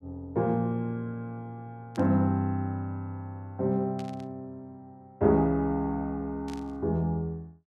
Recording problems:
static burst; at 2 s, at 4 s and at 6.5 s; peak -13 dB vs average level

